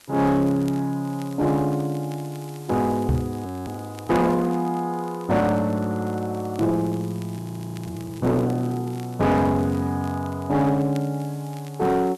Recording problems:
distortion; hard clipping, uneven, signal-to-distortion ratio 11 dB
background hiss; slope -1 dB per octave, SNR 25 dB
crackle; vinyl, SNR 26 dB
microphone bump; at 3 s; peak +5 dB vs average level
audio freezing; at 3.5 s and at 7.5 s

